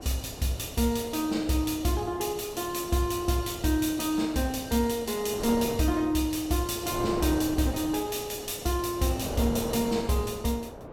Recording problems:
wind on the microphone; below 690 Hz, SNR 11 dB

